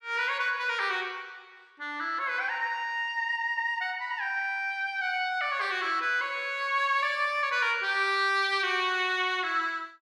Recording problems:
none

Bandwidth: 14 kHz